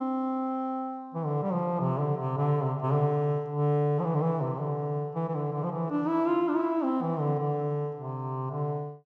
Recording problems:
none

